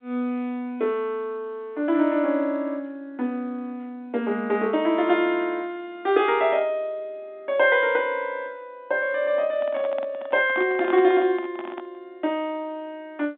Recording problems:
phone line; 220 Hz to 3.7 kHz, G.711
handling noise; from 9.5 to 12 s; peak -5 dB vs average level

